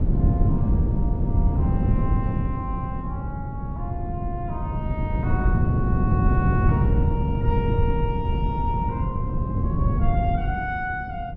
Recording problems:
wind on the microphone; below 160 Hz, SNR -8 dB

